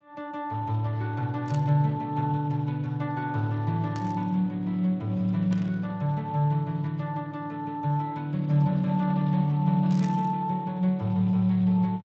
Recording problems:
lossy codec; Speex, log-spectral distance 2 dB, nothing above 16.6 kHz
burst of static; 4 times, first at 1.5 s; peak -13 dB vs average level

